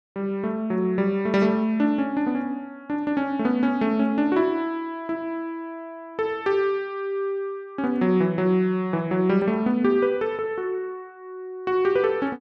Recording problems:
none

